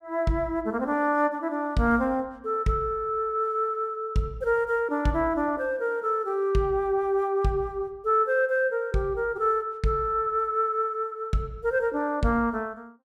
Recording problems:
none

